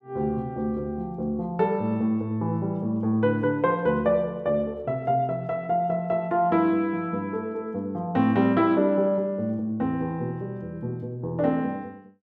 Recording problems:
none

